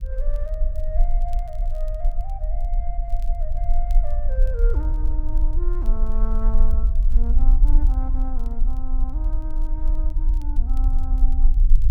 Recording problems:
rumble; below 38 Hz, strongest tone 20 Hz, SNR -13 dB
crackling; vinyl, SNR 23 dB

